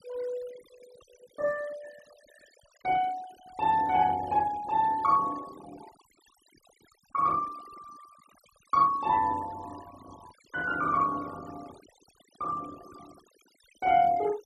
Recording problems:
noise reduction artefacts; signal-to-artefact ratio 22 dB

